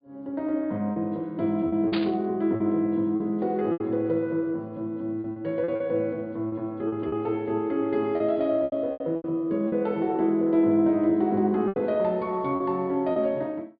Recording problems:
treble missing; nothing above 4.8 kHz
lost packets; 8% of the sound replaced, filled with repeated pitch periods
static burst; at 2 s; peak -2 dB vs average level

